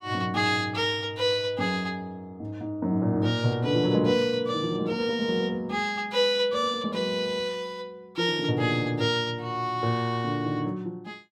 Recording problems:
none

